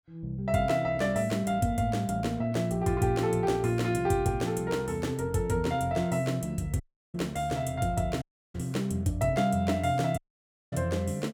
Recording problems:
audio cutting out; at 7 s, at 8 s and at 10 s for 0.5 s

